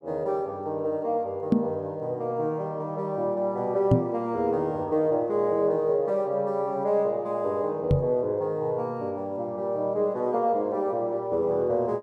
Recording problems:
microphone bump; at 1.5 s, at 4 s and at 8 s; peak +9 dB vs average level

